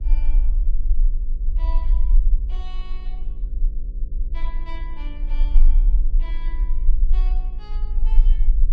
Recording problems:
electrical hum; 60 Hz, harmonics up to 540 Hz, SNR 1 dB
low-frequency rumble; below 36 Hz, strongest tone 20 Hz, SNR -20 dB

